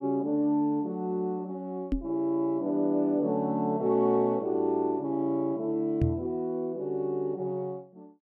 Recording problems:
microphone thump; at 2 s and at 6 s; peak +4 dB vs average level

